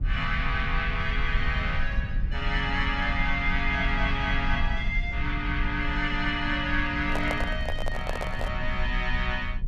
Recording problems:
rumble; below 64 Hz, SNR 4 dB
handling noise; from 7 to 8.5 s; peak +2 dB vs average level

